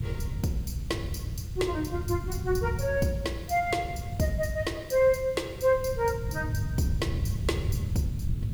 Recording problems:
background hiss; SNR 24 dB
wind on the microphone; below 130 Hz, SNR 5 dB

